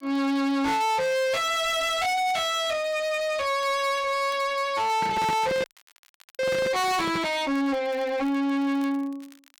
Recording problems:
distorted audio; soft clipping, signal-to-distortion ratio 7 dB
crackle; vinyl, SNR 30 dB
microphone handling noise; from 5 to 7.5 s; peak +1 dB vs average level
frozen audio; at 5.5 s for 1 s

